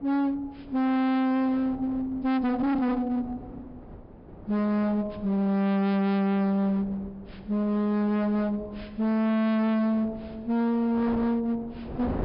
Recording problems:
treble cut off; nothing above 5.5 kHz
distortion; hard clipping, uneven, signal-to-distortion ratio 6 dB
wind on the microphone; below 500 Hz, SNR 18 dB

